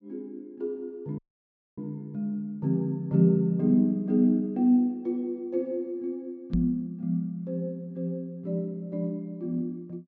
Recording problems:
treble missing; nothing above 8 kHz
audio cutting out; at 1 s for 0.5 s
knock on the microphone; at 6.5 s; peak +3 dB vs average level

